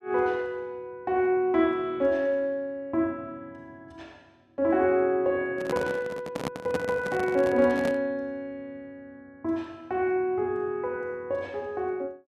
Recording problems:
microphone handling noise; from 5.5 to 8 s; peak 0 dB vs average level

